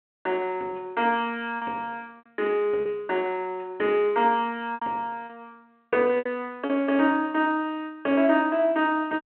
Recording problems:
telephone audio; 190 Hz to 3.3 kHz, G.726
lost packets; 4% of the sound replaced, filled with repeated pitch periods

